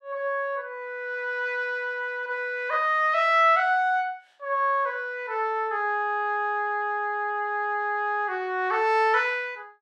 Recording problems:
none

